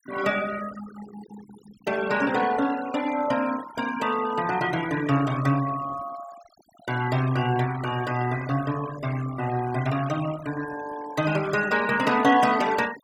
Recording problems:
noise reduction artefacts; signal-to-artefact ratio 15 dB

